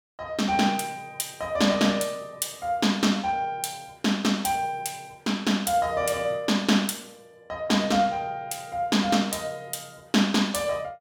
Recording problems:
none

